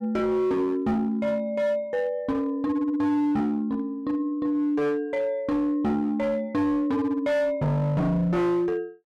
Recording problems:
distorted audio; hard clipping, signal-to-distortion ratio 10 dB

